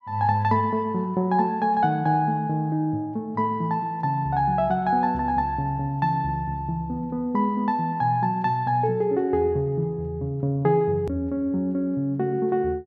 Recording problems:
edit click; at 11 s

